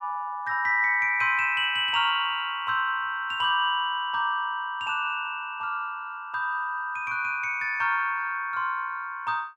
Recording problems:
none

